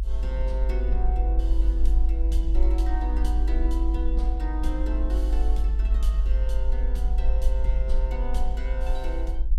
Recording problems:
rumble; below 50 Hz, strongest tone 50 Hz, SNR -10 dB

